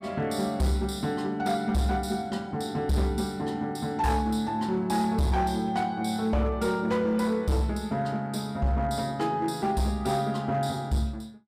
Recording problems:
distorted audio; hard clipping, signal-to-distortion ratio 12 dB

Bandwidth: 15 kHz